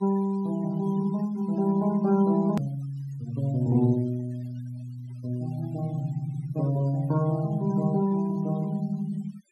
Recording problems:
noise reduction artefacts; signal-to-artefact ratio 23 dB
edit click; at 2.5 s

